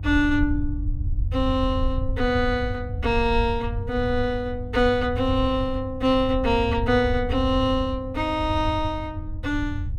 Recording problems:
hum; 50 Hz, harmonics up to 500 Hz, SNR 15 dB
rumble; below 88 Hz, SNR 7 dB

